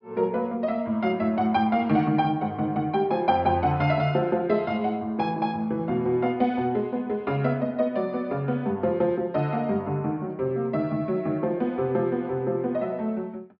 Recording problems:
treble cut off; nothing above 5.5 kHz

